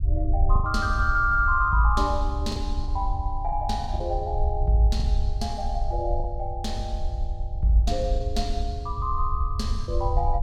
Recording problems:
low-frequency rumble; below 70 Hz, SNR 3 dB
packet loss; 4% of the sound replaced, filled with the last packet

